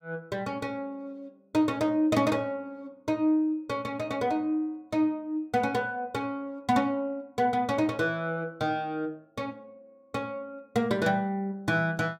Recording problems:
none

